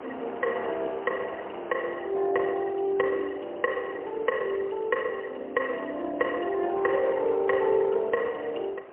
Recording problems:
phone line; 300 Hz to 3.4 kHz, AMR-NB, then MP3
wind noise; below 1 kHz, SNR 16 dB

